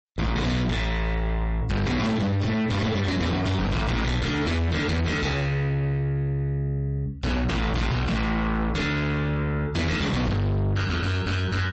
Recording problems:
codec artefacts; MP3, log-spectral distance 2 dB, nothing above 8 kHz
distortion; soft clipping, signal-to-distortion ratio 6 dB

